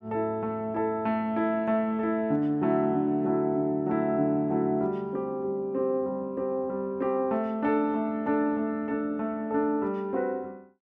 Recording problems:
none

